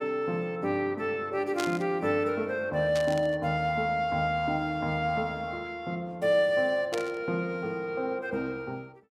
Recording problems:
burst of static; at 1.5 s, at 3 s and at 7 s; peak -2 dB vs average level

